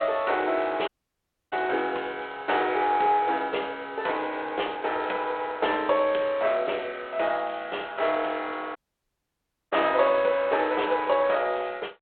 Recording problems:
telephone audio; 340 Hz to 3.6 kHz, G.726
audio cutting out; at 1 s for 0.5 s and at 9 s for 1 s

